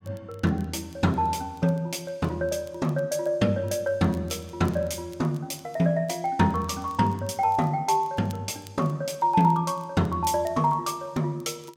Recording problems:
crackling; vinyl, SNR 29 dB

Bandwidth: 16.5 kHz